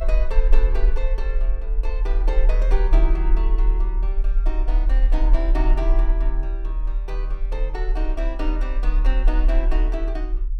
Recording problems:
low-frequency rumble; below 38 Hz, strongest tone 38 Hz, SNR -10 dB

